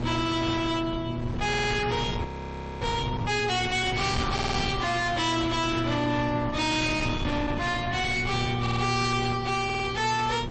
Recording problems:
lossy compression; MP3, log-spectral distance 4 dB, nothing above 8.2 kHz
distortion; soft clipping, signal-to-distortion ratio 7 dB
mains hum; 60 Hz, harmonics up to 600 Hz, SNR 9 dB
wind noise; below 890 Hz, SNR 7 dB
stutter; 4 times, first at 1.5 s
frozen audio; at 2.5 s for 0.5 s

